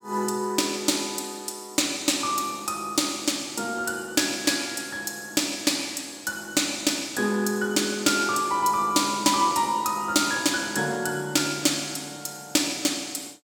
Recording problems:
none

